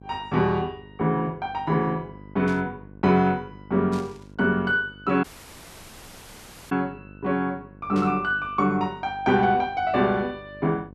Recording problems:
electrical hum; 50 Hz, harmonics up to 1.1 kHz, SNR 22 dB
burst of static; at 2.5 s, at 4 s and at 8 s; peak -13 dB vs average level
audio cutting out; at 5 s for 1.5 s

